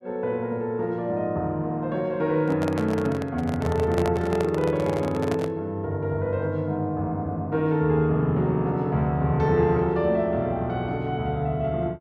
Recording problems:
handling noise; from 2.5 to 5.5 s; peak -1 dB vs average level

